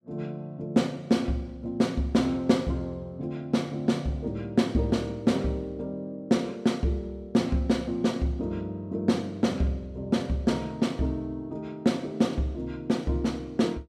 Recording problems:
none

